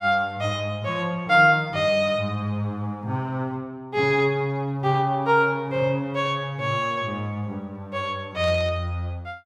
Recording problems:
static burst; at 8.5 s; peak -14 dB vs average level

